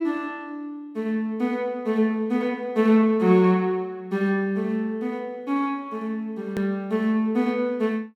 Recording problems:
edit click; at 6.5 s

